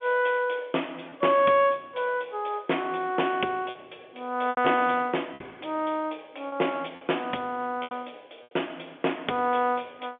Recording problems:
phone line; 260 Hz to 3.5 kHz, G.711
lost packets; 4% of the sound replaced, filled with repeated pitch periods

